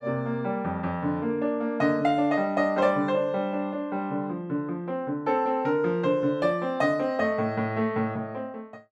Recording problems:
none

